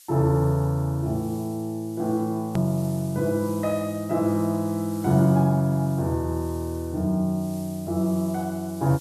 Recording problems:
hiss; slope +5 dB per octave, SNR 21 dB
hard cut with a click; at 2.5 s

